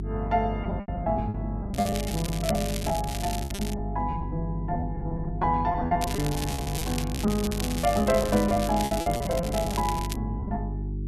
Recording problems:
hum; 50 Hz, harmonics up to 400 Hz, SNR 5 dB
lost packets; 13% of the sound replaced, filled with repeated pitch periods
crackle; from 1.5 to 3.5 s and from 6 to 10 s; loose cable, SNR 8 dB

